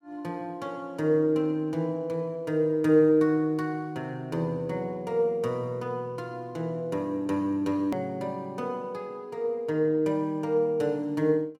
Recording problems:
hard cut with a click; at 8 s

